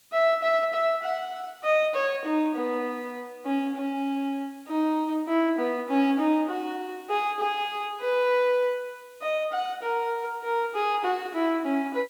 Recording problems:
background hiss; slope +1 dB per octave, SNR 29 dB

